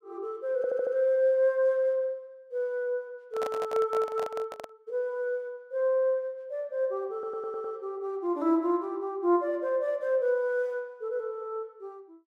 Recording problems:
stutter; at 0.5 s and at 7 s
microphone handling noise; from 3.5 to 4.5 s; peak -4 dB vs average level

